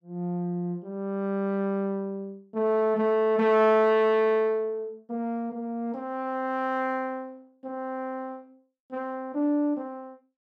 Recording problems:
none

